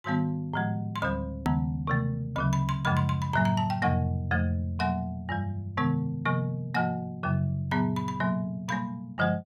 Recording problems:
edit click; at 1.5 s

